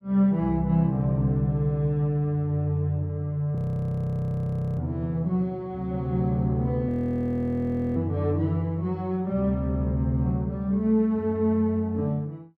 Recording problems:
audio freezing; at 3.5 s for 1 s and at 7 s for 1 s

